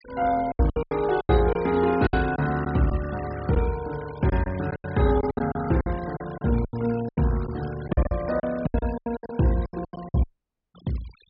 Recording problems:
treble cut off; nothing above 5.5 kHz
denoising artefacts; signal-to-artefact ratio 18 dB
packet loss; 15% of the sound replaced, filled with silence
audio cutting out; at 10 s for 0.5 s

